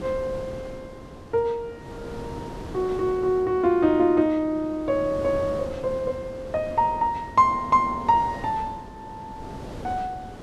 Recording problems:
wind noise; below 570 Hz, SNR 15 dB

